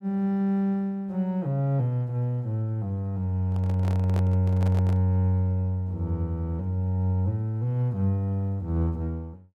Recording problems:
handling noise; from 3.5 to 5 s; peak -8 dB vs average level

